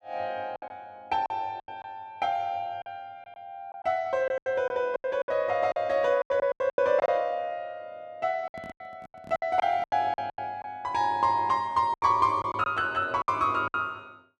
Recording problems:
packet loss; 12% of the sound replaced, filled with silence
microphone handling noise; from 8.5 to 10 s; peak -15 dB vs average level

